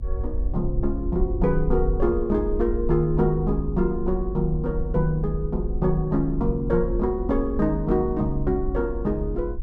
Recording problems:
low-frequency rumble; below 60 Hz, SNR 6 dB

